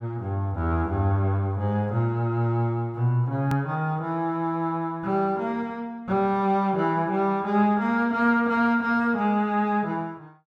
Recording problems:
click at an edit; at 3.5 s

